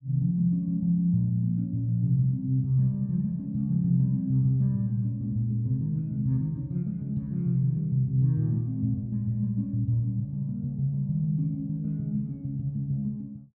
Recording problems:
none

